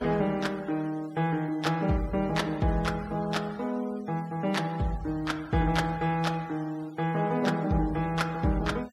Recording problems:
denoising artefacts; signal-to-artefact ratio 22 dB

